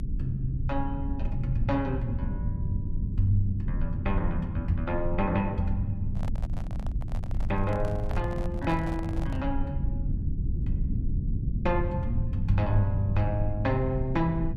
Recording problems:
low-frequency rumble; below 110 Hz, SNR 2 dB
microphone handling noise; from 6 to 9.5 s; peak -5 dB vs average level

